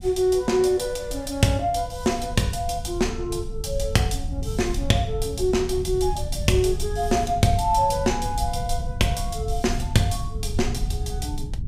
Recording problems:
low-frequency rumble; below 94 Hz, SNR 8 dB

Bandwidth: 15.5 kHz